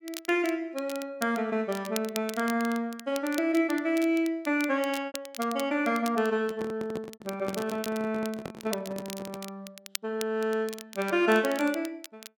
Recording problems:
crackling; vinyl, SNR 14 dB
packet loss; 1.9% of the sound replaced, filled with repeated pitch periods
handling noise; from 6.5 to 9.5 s; peak -4 dB vs average level

